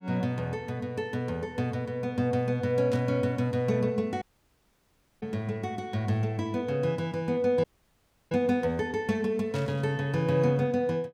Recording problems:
static burst; at 3 s and at 9.5 s; peak -11 dB vs average level
dropout; at 4 s for 1 s and at 7.5 s for 0.5 s

